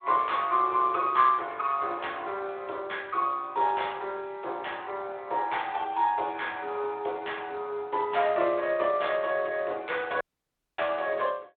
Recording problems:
phone line; 300 Hz to 3.6 kHz, Speex
audio cutting out; at 10 s for 0.5 s

